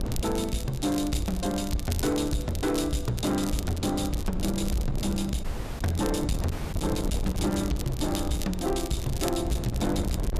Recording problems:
distortion; soft clipping, signal-to-distortion ratio 11 dB
wind on the microphone; below 180 Hz, SNR 6 dB
crackle; vinyl, SNR 13 dB
dropout; at 5.5 s and at 6.5 s

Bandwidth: 14.5 kHz